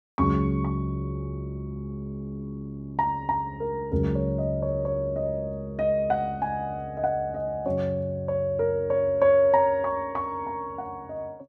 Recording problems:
none

